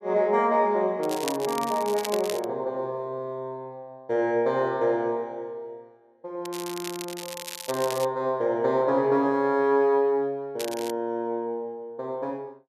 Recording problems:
crackling; from 1 to 2.5 s, from 6.5 to 8 s and at 11 s; loose cable, SNR 11 dB

